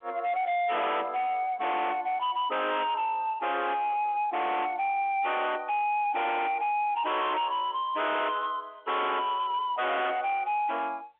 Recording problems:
phone line; 320 Hz to 3.6 kHz, G.711
distorted audio; hard clipping, signal-to-distortion ratio 5 dB

